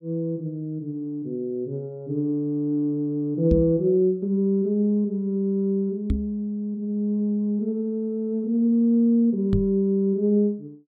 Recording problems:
microphone thump; at 3.5 s, at 6 s and at 9.5 s; peak +4 dB vs average level

